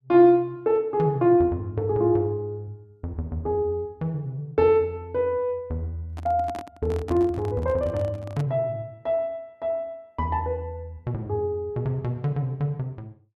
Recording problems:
handling noise; from 6 to 8.5 s; peak -7 dB vs average level

